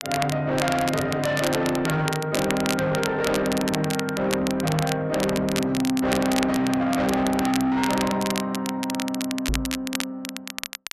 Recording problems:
distorted audio; soft clipping, signal-to-distortion ratio 8 dB
crackle; vinyl, SNR 7 dB
knock on the microphone; at 9.5 s; peak 0 dB vs average level

